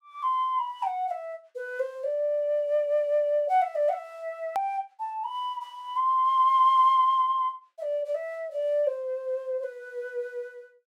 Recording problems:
click at an edit; at 4.5 s

